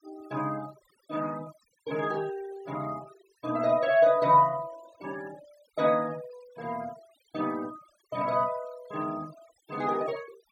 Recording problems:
denoising artefacts; signal-to-artefact ratio 22 dB

